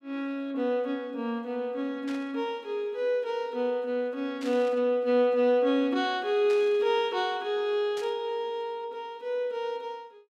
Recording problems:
static burst; 4 times, first at 2 s; peak -10 dB vs average level

